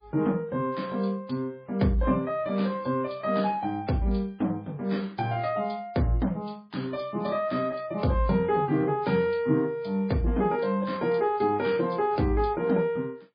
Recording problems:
lossy compression; MP3, log-spectral distance 2 dB, nothing above 4.6 kHz

